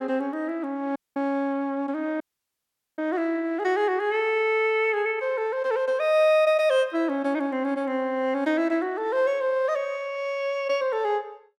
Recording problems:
audio cutting out; at 1 s and at 2 s for 1 s

